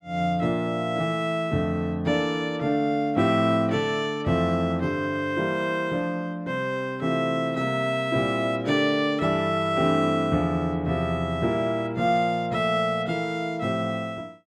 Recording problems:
none

